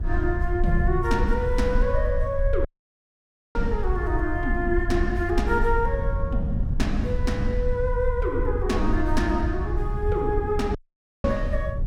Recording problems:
low-frequency rumble; below 62 Hz, SNR 3 dB
wind noise; below 120 Hz, SNR 7 dB
audio cutting out; at 2.5 s for 1 s and at 11 s

